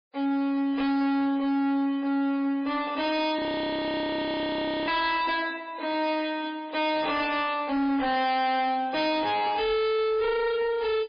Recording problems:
codec artefacts; MP3, log-spectral distance 3 dB, nothing above 5 kHz
distortion; hard clipping, signal-to-distortion ratio 6 dB
frozen audio; at 3.5 s for 1.5 s

